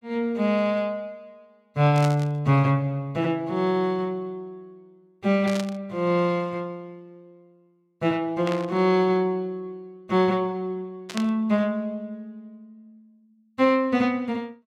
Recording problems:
burst of static; 4 times, first at 2 s; peak -4 dB vs average level

